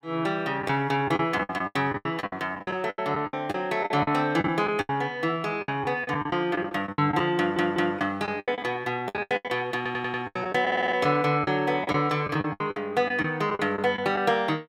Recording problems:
lost packets; 16% of the sound replaced, filled with the last packet
stutter; at 7.5 s, at 10 s and at 11 s

